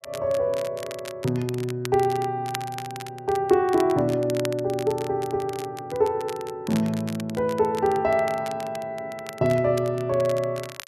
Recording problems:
crackling; vinyl, SNR 16 dB

